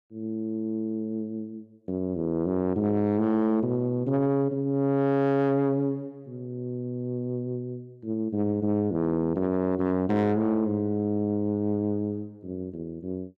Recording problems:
distortion; soft clipping, signal-to-distortion ratio 12 dB

